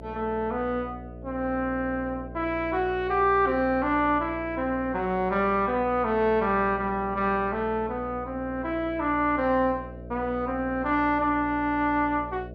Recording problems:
electrical hum; 60 Hz, harmonics up to 660 Hz, SNR 15 dB

